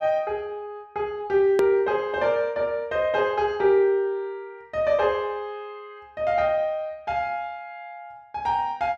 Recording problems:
edit click; at 1.5 s

